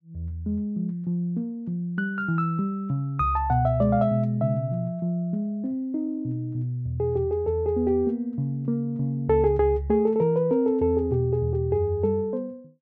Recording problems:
none

